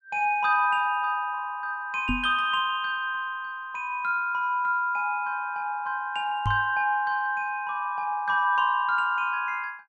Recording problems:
knock on the microphone; at 2 s and at 6.5 s; peak +1 dB vs average level

